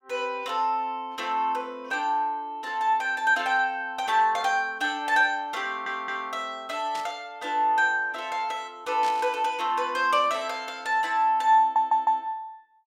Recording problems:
stutter; at 5.5 s and at 12 s
burst of static; at 7 s and at 9 s; peak -8 dB vs average level

